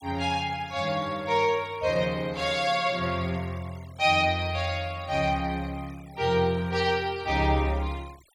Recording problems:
denoising artefacts; signal-to-artefact ratio 24 dB

